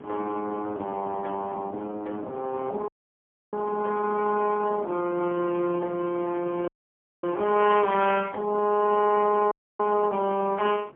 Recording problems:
phone line; 190 Hz to 3.3 kHz, AMR-NB, then MP3
wind on the microphone; below 470 Hz, SNR 18 dB
audio cutting out; at 3 s for 0.5 s, at 6.5 s for 0.5 s and at 9.5 s

